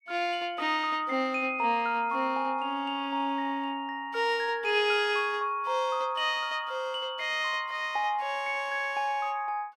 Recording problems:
none

